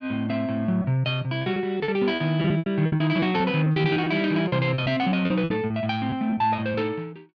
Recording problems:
packet loss; 13% of the sound replaced, filled with repeated pitch periods

